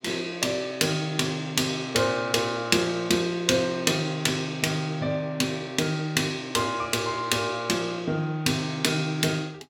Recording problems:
none

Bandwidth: 17 kHz